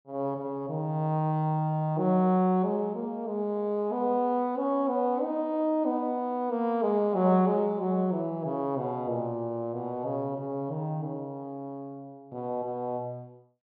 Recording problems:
treble missing; nothing above 4.9 kHz

